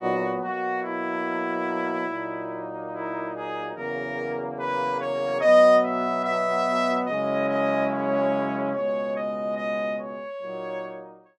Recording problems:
none

